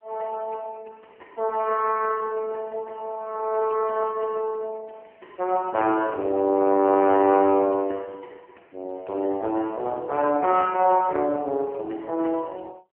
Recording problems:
telephone audio; 240 Hz to 2.9 kHz, AMR-NB

